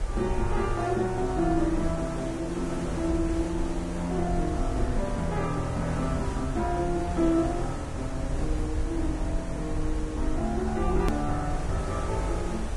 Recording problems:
codec artefacts; Vorbis, log-spectral distance 3 dB, nothing above 13.1 kHz
hiss; slope -6 dB per octave, SNR 9 dB
low-frequency rumble; below 68 Hz, SNR 6 dB
edit click; at 11 s

